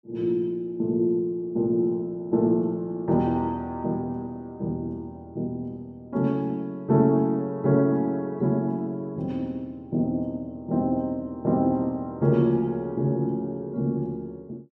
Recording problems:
none

